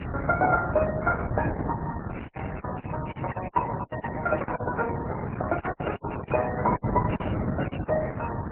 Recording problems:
lossy codec; MP3, then Opus, log-spectral distance 15 dB
background hiss; SNR 17 dB
wind on the microphone; below 360 Hz, SNR 3 dB
packet loss; 11% of the sound replaced, filled with silence

